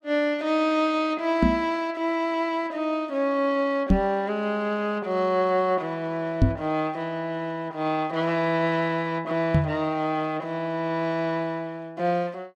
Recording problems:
knock on the microphone; 4 times, first at 1.5 s; peak +9 dB vs average level

